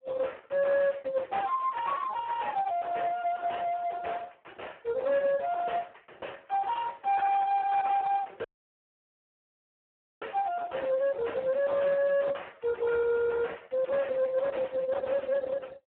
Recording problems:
phone line; 970 Hz to 3.1 kHz, Speex
distortion; soft clipping, signal-to-distortion ratio 6 dB
dropout; at 8.5 s for 2 s

